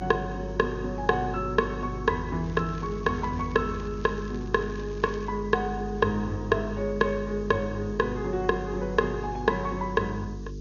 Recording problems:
low-pass filter; nothing above 6.7 kHz
lossy codec; AAC, log-spectral distance 5 dB
hum; 50 Hz, harmonics up to 450 Hz, SNR 9 dB
background hiss; SNR 29 dB
crackle; from 2.5 to 5.5 s; loose cable, SNR 25 dB

